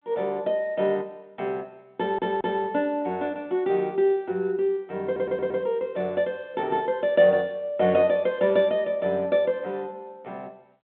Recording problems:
phone line; 240 Hz to 3.5 kHz, G.726
audio stuttering; at 2 s and at 5 s

